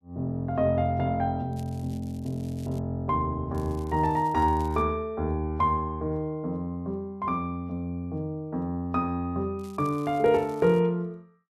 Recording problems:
crackle; from 1.5 to 3 s, from 3.5 to 5 s and from 9.5 to 11 s; loose cable, SNR 27 dB

